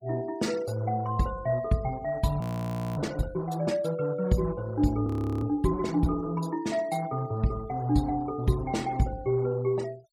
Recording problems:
denoising artefacts; signal-to-artefact ratio 23 dB
frozen audio; at 2.5 s for 0.5 s and at 5 s

